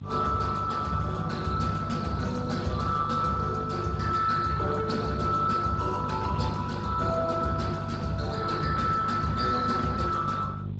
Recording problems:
lossy compression; Speex, log-spectral distance 4 dB, nothing above 7.3 kHz
mains hum; 50 Hz, harmonics up to 400 Hz, SNR 8 dB

